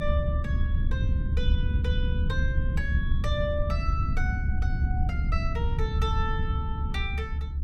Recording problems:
low-frequency rumble; below 94 Hz, SNR -7 dB

